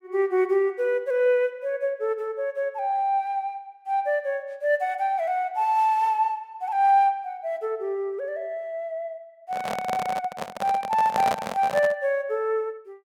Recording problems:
handling noise; from 9.5 to 12 s; peak +1 dB vs average level

